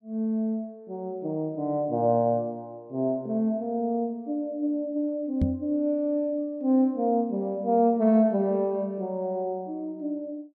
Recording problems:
microphone thump; at 5.5 s; peak +5 dB vs average level

